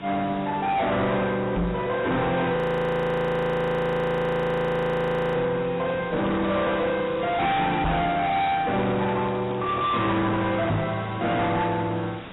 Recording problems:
codec artefacts; AAC, log-spectral distance 8 dB, nothing above 3.6 kHz
distortion; soft clipping, signal-to-distortion ratio 7 dB
hiss; SNR 16 dB
microphone thump; at 1.5 s, at 8 s and at 11 s; peak +4 dB vs average level
frozen audio; at 2.5 s for 3 s
crackle; from 6 to 8.5 s and at 8.5 s; loose cable, SNR 25 dB

